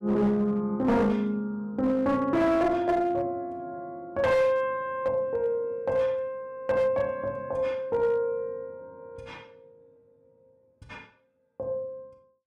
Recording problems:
distortion; hard clipping, uneven, signal-to-distortion ratio 11 dB

